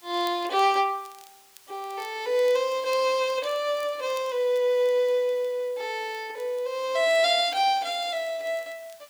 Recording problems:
background hiss; slope +1 dB per octave, SNR 27 dB
crackling; vinyl, SNR 28 dB

